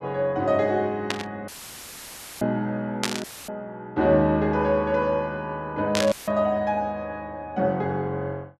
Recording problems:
static burst; at 1 s, at 3 s and at 6 s; peak +5 dB vs average level
dropout; at 1.5 s for 1 s, at 3 s and at 6 s; filled with static

